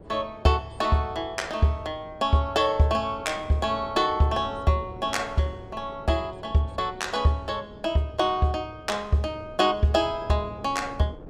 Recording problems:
wind on the microphone; below 450 Hz, SNR 20 dB

